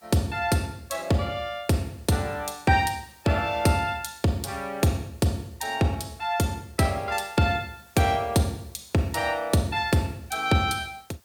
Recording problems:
background hiss; slope -1 dB per octave, SNR 29 dB

